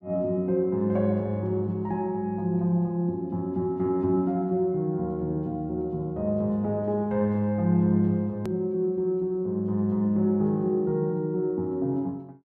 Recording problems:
edit click; at 8.5 s

